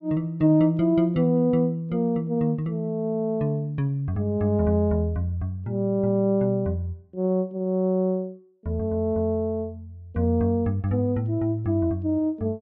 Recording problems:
none

